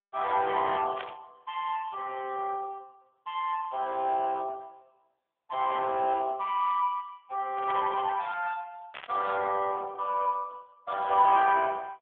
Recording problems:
phone line; 340 Hz to 3.2 kHz, AMR-NB
static burst; at 1 s, at 7.5 s and at 9 s; peak -4 dB vs average level

